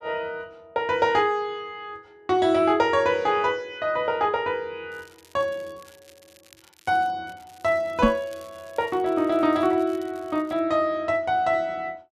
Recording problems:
crackle; from 5 to 7 s and from 7.5 to 11 s; loose cable, SNR 29 dB
knock on the microphone; at 8 s; peak +7 dB vs average level

